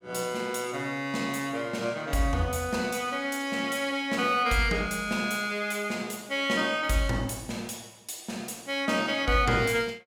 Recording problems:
none

